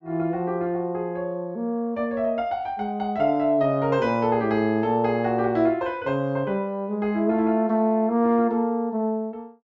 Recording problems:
none

